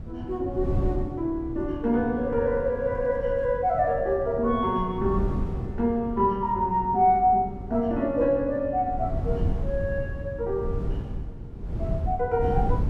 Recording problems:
wind noise; below 140 Hz, SNR 8 dB

